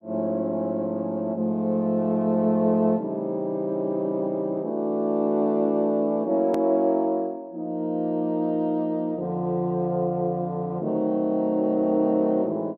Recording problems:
click at an edit; at 6.5 s

